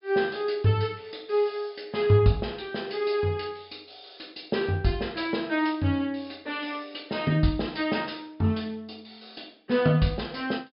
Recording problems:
treble missing; nothing above 5.5 kHz

